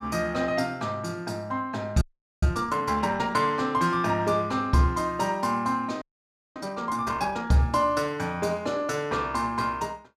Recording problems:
audio freezing; at 2 s and at 6 s for 0.5 s

